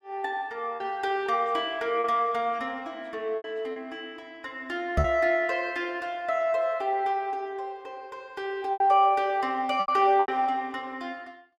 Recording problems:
lost packets; 4% of the sound replaced, filled with repeated pitch periods
microphone bump; at 5 s; peak +4 dB vs average level

